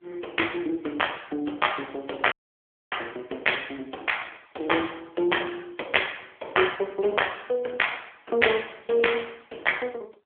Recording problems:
phone line; 280 Hz to 3.4 kHz, AMR-NB
audio cutting out; at 2.5 s for 0.5 s

